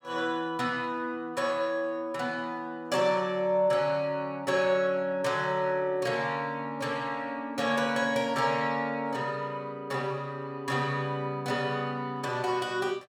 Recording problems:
none

